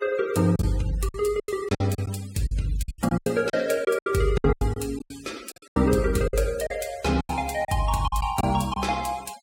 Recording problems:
denoising artefacts; signal-to-artefact ratio 20 dB
packet loss; 14% of the sound replaced, filled with silence

